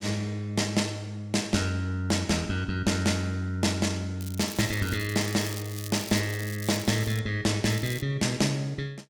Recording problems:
crackle; from 4 to 7 s and at 7.5 s; loose cable, SNR 12 dB

